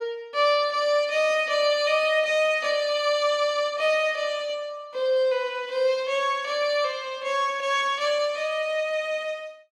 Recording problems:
none

